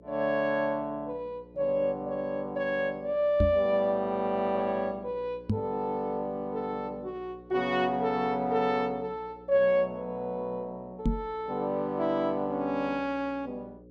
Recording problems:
hum; 60 Hz, harmonics up to 540 Hz, SNR 22 dB
microphone bump; at 3.5 s, at 5.5 s and at 11 s; peak +5 dB vs average level

